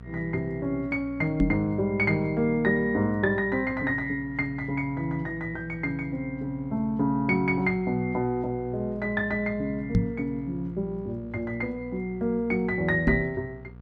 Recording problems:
hum; 60 Hz, harmonics up to 1.2 kHz, SNR 17 dB
microphone thump; at 1.5 s, at 10 s and at 13 s; peak +8 dB vs average level

